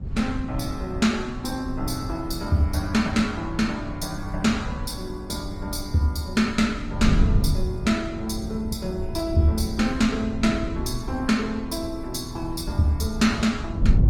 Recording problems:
lossy compression; Opus, log-spectral distance 3 dB, nothing above 17.4 kHz
wind noise; below 120 Hz, SNR 7 dB

